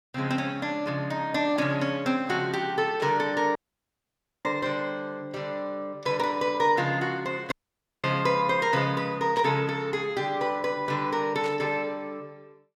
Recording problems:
burst of static; at 3 s, at 9.5 s and at 11 s; peak -9 dB vs average level
dropout; at 3.5 s for 1 s and at 7.5 s for 0.5 s

